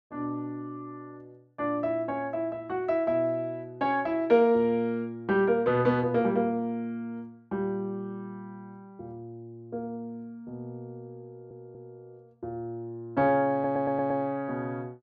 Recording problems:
audio stuttering; at 11 s and at 14 s

